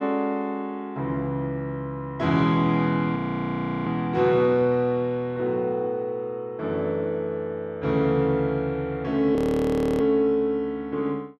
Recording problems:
frozen audio; at 3 s for 0.5 s and at 9.5 s for 0.5 s

